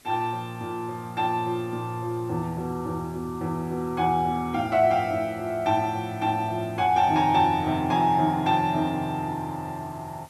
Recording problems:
hiss; slope -1 dB per octave, SNR 27 dB

